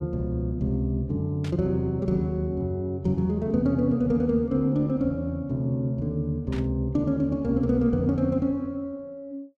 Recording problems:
burst of static; at 1.5 s and at 6.5 s; peak -11 dB vs average level

